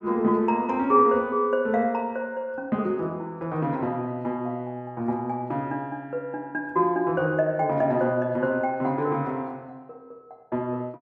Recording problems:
none

